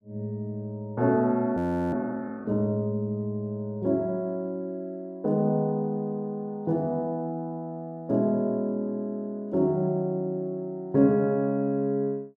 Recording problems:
audio freezing; at 1.5 s

